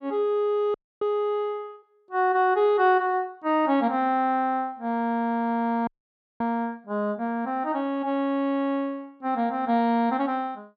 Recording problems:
audio freezing; at 0.5 s and at 6 s for 0.5 s

